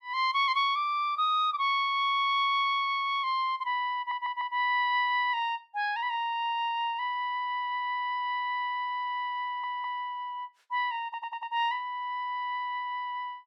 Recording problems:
audio stuttering; at 4 s, at 9.5 s and at 11 s

